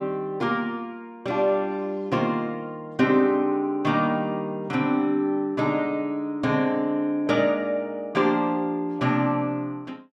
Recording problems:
none

